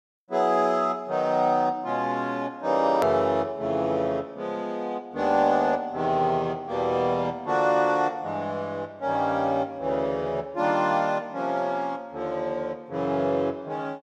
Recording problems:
hard cut with a click; at 3 s

